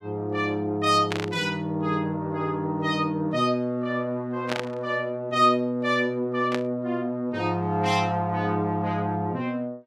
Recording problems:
static burst; at 1 s, at 4.5 s and at 6.5 s; peak 0 dB vs average level

